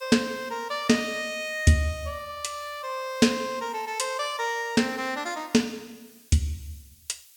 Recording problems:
hiss; SNR 25 dB

